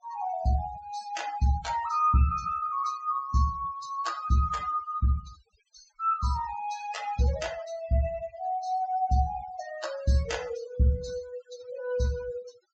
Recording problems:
treble cut off; nothing above 8 kHz
denoising artefacts; signal-to-artefact ratio 17 dB

